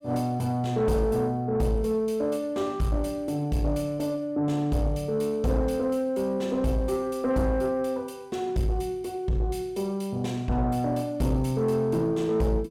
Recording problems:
distorted audio; soft clipping, signal-to-distortion ratio 11 dB

